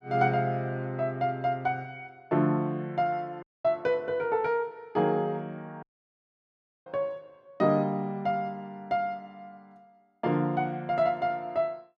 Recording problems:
audio cutting out; at 3.5 s and at 6 s for 1 s

